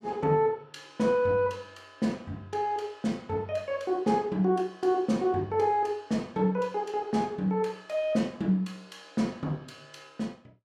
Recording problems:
none

